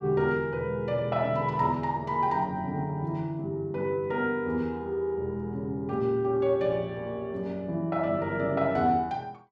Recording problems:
none

